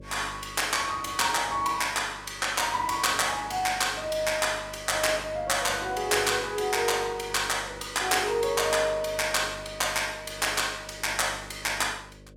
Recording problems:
hum; 50 Hz, harmonics up to 600 Hz, SNR 21 dB

